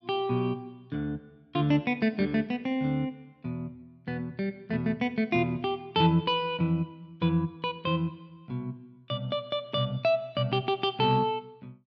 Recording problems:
none

